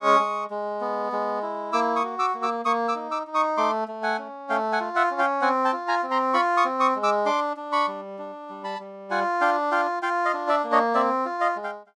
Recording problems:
none

